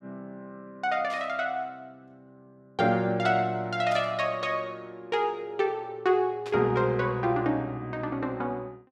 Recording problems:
static burst; at 1 s, at 4 s and at 6.5 s; peak -10 dB vs average level

